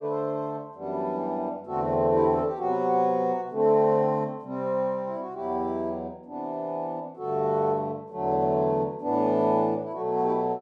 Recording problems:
none

